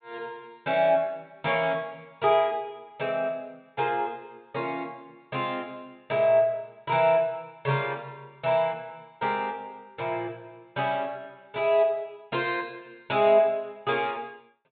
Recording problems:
treble missing; nothing above 4 kHz

